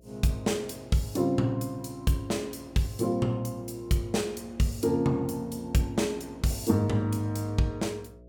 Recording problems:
electrical hum; 60 Hz, harmonics up to 660 Hz, SNR 25 dB

